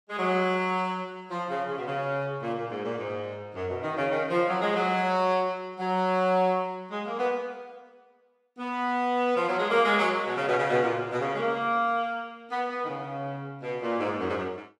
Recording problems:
none

